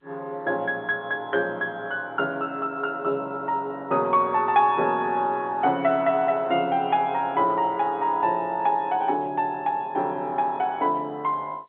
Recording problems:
phone line; 300 Hz to 3.6 kHz, G.711

